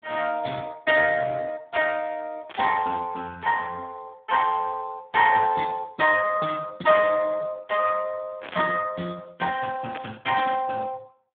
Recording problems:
telephone audio; 240 Hz to 3.1 kHz, Speex
static burst; 4 times, first at 2.5 s; peak -7 dB vs average level

